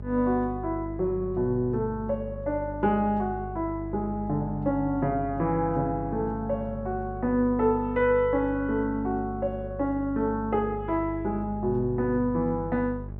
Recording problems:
electrical hum; 50 Hz, harmonics up to 650 Hz, SNR 11 dB

